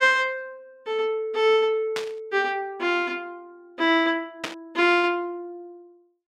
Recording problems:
burst of static; at 2 s and at 4.5 s; peak -1 dB vs average level

